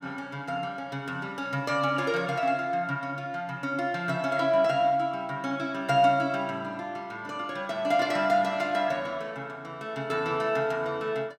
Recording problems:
none

